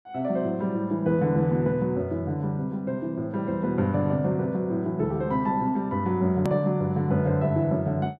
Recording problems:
edit click; at 6.5 s

